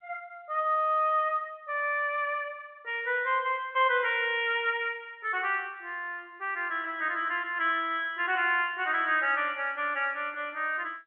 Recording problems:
telephone audio; 320 Hz to 3.4 kHz, G.711

